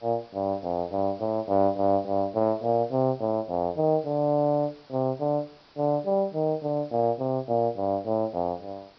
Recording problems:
treble missing; nothing above 5.5 kHz
hiss; slope -2 dB per octave, SNR 28 dB

